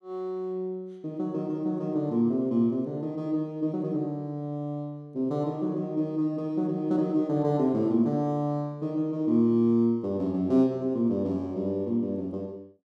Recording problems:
none

